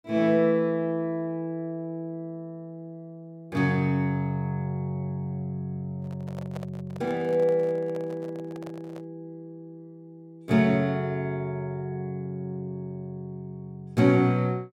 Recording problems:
microphone handling noise; from 6 to 9 s; peak -9 dB vs average level

